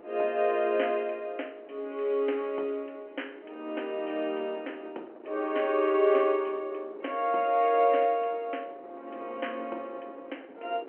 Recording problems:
telephone audio; 280 Hz to 3.2 kHz, G.711
wind noise; below 640 Hz, SNR 20 dB

